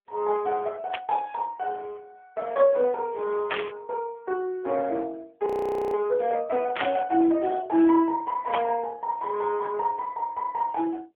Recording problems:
telephone audio; 280 Hz to 3.4 kHz, AMR-NB
static burst; 4 times, first at 1 s; peak +1 dB vs average level
frozen audio; at 5.5 s

